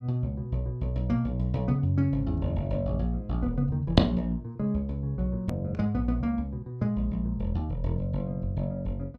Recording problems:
edit click; at 5.5 s

